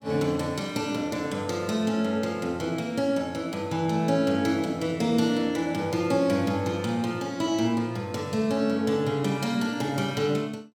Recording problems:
none

